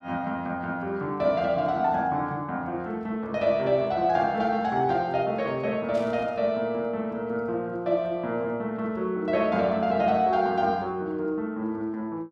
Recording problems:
static burst; at 6 s; peak -16 dB vs average level

